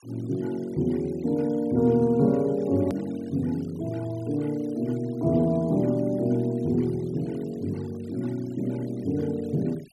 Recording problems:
noise reduction artefacts; signal-to-artefact ratio 26 dB
hard cut with a click; at 3 s

